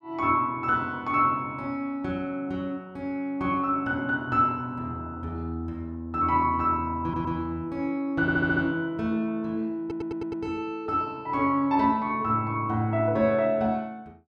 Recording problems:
stutter; at 7 s, at 8 s and at 10 s

